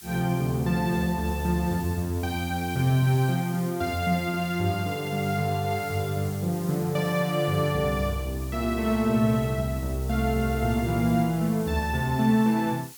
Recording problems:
background hiss; SNR 18 dB

